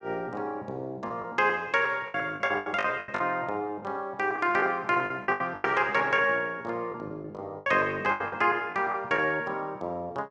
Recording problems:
lost packets; 11% of the sound replaced, filled with the last packet

